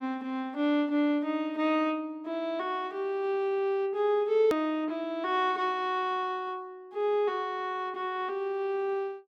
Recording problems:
edit click; at 4.5 s

